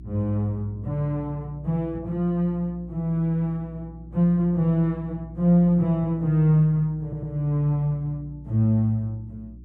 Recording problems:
hum; 60 Hz, harmonics up to 360 Hz, SNR 19 dB
stutter; at 7 s

